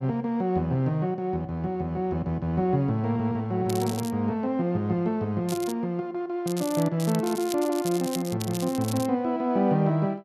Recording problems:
crackle; 4 times, first at 3.5 s; loose cable, SNR 12 dB

